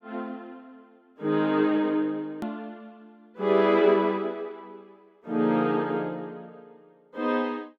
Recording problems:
click at an edit; at 2.5 s

